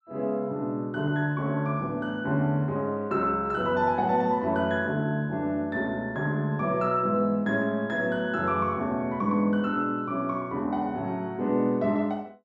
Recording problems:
none

